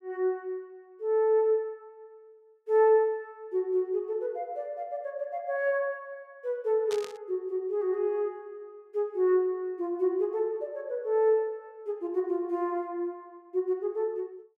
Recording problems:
burst of static; at 7 s; peak -6 dB vs average level

